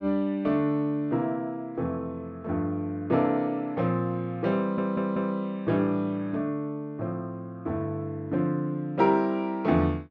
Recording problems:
audio stuttering; at 4.5 s

